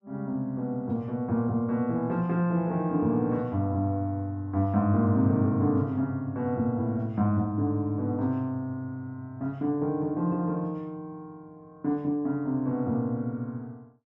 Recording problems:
none

